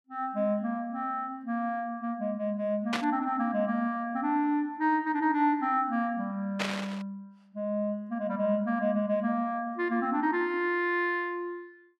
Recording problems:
static burst; at 3 s and at 6.5 s; peak +3 dB vs average level

